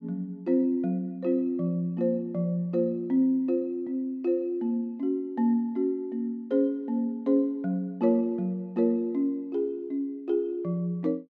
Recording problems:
none

